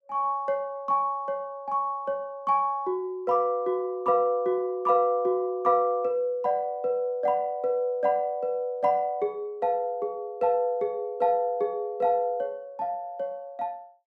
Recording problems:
none

